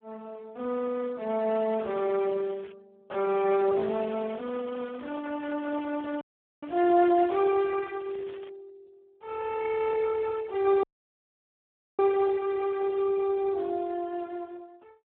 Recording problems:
phone line; 220 Hz to 2.2 kHz, Speex
crackle; from 1.5 to 2.5 s, from 3.5 to 5.5 s and from 5.5 to 8.5 s; loose cable, SNR 25 dB
microphone handling noise; from 3.5 to 7.5 s; peak -12 dB vs average level
dropout; at 6 s and at 11 s for 1 s

